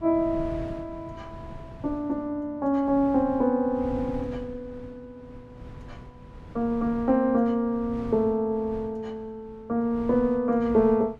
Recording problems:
wind on the microphone; below 230 Hz, SNR 17 dB

